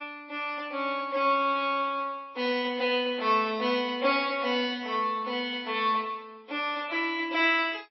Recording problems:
lossy compression; MP3, log-spectral distance 2 dB, nothing above 5 kHz

